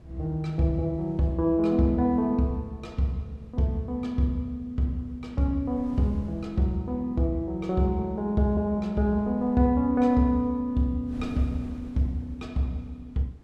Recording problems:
wind on the microphone; below 270 Hz, SNR 21 dB

